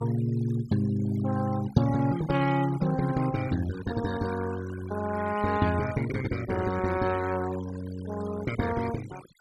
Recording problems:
noise reduction artefacts; signal-to-artefact ratio 15 dB

